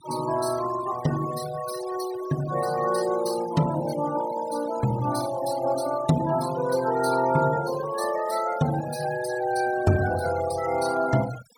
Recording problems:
denoising artefacts; signal-to-artefact ratio 13 dB

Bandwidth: 17.5 kHz